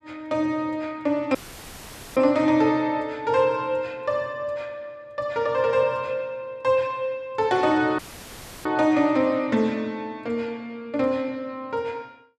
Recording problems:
audio cutting out; at 1.5 s for 1 s and at 8 s for 0.5 s; filled with static

